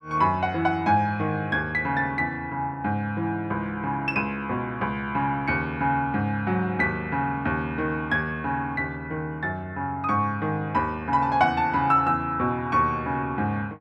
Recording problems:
none

